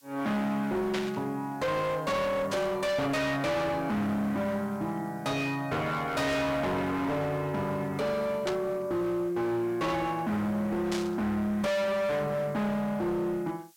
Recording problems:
distortion; hard clipping, signal-to-distortion ratio 6 dB
hiss; slope +4 dB per octave, SNR 28 dB
burst of static; 4 times, first at 1 s; peak -1 dB vs average level

